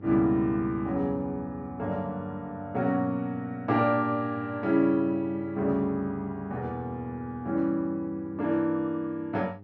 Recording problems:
electrical hum; 50 Hz, harmonics up to 900 Hz, SNR 20 dB

